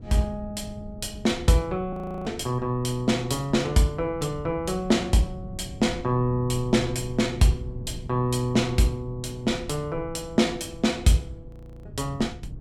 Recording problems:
wind on the microphone; below 150 Hz, SNR 15 dB
audio freezing; at 2 s and at 11 s

